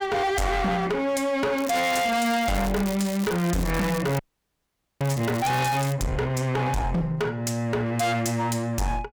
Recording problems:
distorted audio; hard clipping, uneven, signal-to-distortion ratio 6 dB
crackle; from 1.5 to 6 s; loose cable, SNR 12 dB
audio freezing; at 4 s for 1 s

